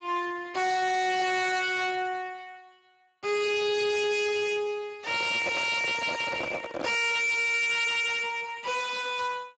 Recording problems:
codec artefacts; Speex, log-spectral distance 5 dB, nothing above 7.8 kHz
distorted audio; soft clipping, signal-to-distortion ratio 6 dB
microphone handling noise; from 5 to 7 s; peak -1 dB vs average level

